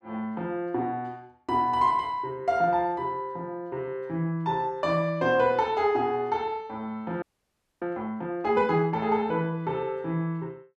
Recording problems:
audio freezing; at 7 s for 0.5 s

